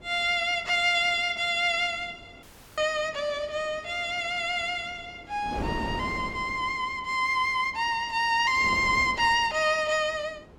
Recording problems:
wind noise; below 580 Hz, SNR 16 dB
dropout; at 2.5 s

